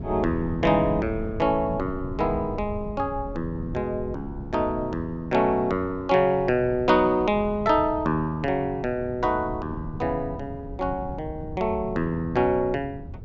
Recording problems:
treble missing; nothing above 8 kHz
wind noise; below 160 Hz, SNR 12 dB

